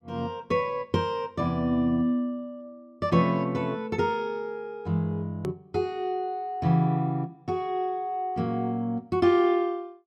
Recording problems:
click at an edit; at 5.5 s

